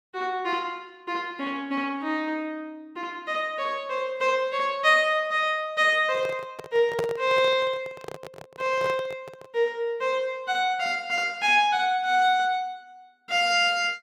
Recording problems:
handling noise; from 6 to 9.5 s; peak 0 dB vs average level

